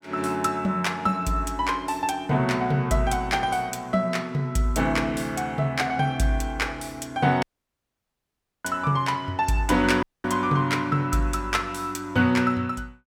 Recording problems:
dropout; at 7.5 s for 1 s and at 10 s

